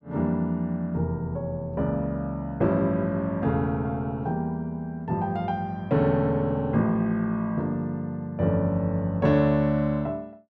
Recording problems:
none

